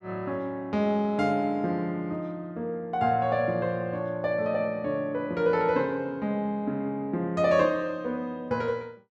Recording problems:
none

